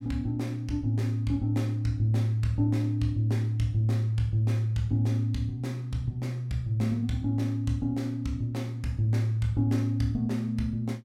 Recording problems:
none

